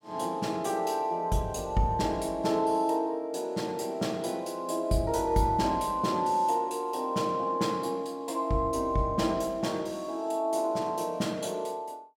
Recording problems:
none

